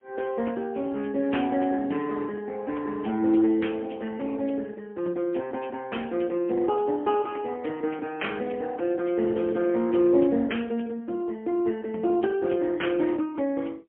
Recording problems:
phone line; 240 Hz to 3.3 kHz, AMR-NB, then MP3

